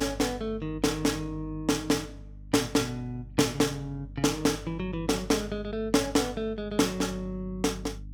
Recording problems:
mains hum; 50 Hz, harmonics up to 300 Hz, SNR 15 dB

